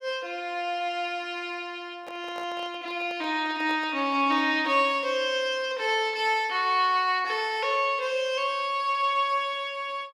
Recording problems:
handling noise; from 2 to 4.5 s; peak -11 dB vs average level

